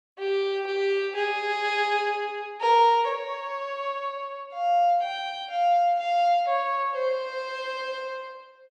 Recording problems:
none

